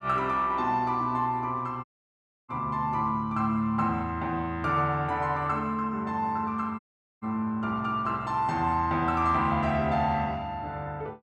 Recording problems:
audio cutting out; at 2 s for 0.5 s and at 7 s

